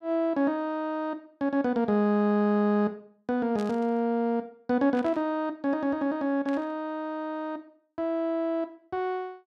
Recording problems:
burst of static; at 3.5 s, at 5 s and at 6.5 s; peak -13 dB vs average level

